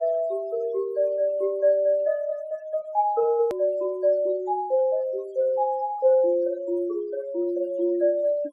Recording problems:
denoising artefacts; signal-to-artefact ratio 27 dB
edit click; at 3.5 s

